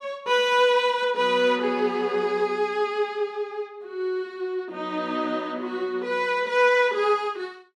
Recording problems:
none

